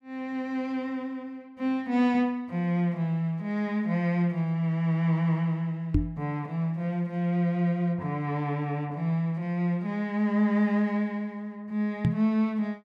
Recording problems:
microphone bump; at 6 s and at 12 s; peak +7 dB vs average level

